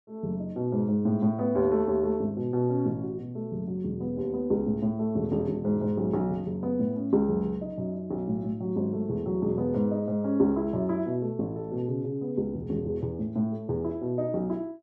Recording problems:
none

